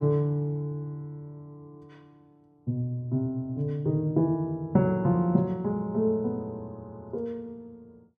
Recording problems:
none

